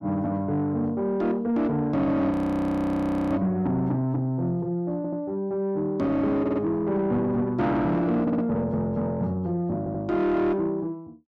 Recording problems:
distortion; soft clipping, signal-to-distortion ratio 11 dB
frozen audio; at 2.5 s for 1 s
stutter; 4 times, first at 5 s

